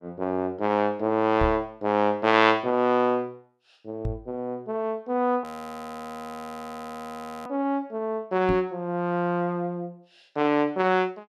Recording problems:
microphone thump; at 1.5 s, at 4 s and at 8.5 s; peak -1 dB vs average level
frozen audio; at 5.5 s for 2 s

